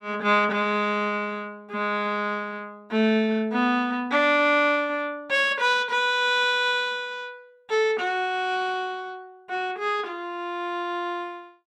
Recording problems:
none

